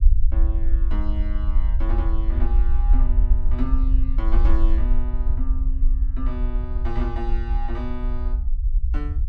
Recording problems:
rumble; below 50 Hz, SNR -10 dB

